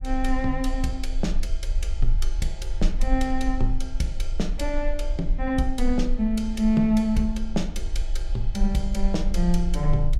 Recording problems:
rumble; below 38 Hz, strongest tone 18 Hz, SNR 3 dB

